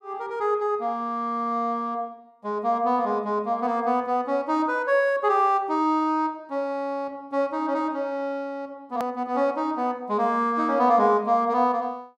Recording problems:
click at an edit; at 9 s

